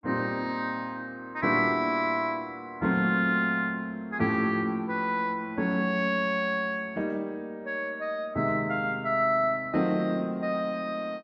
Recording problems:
none

